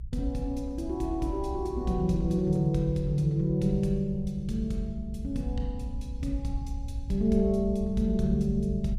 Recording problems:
rumble; below 66 Hz, SNR 9 dB

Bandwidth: 15 kHz